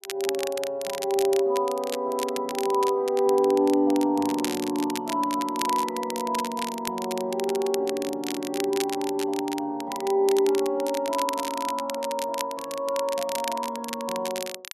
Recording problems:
crackle; vinyl, SNR 10 dB

